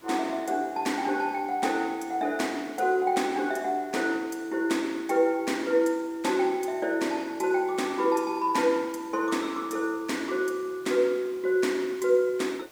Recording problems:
background hiss; slope -3 dB per octave, SNR 26 dB

